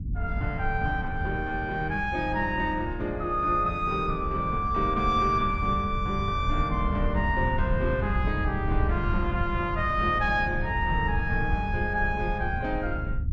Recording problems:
low-frequency rumble; below 100 Hz, SNR 5 dB

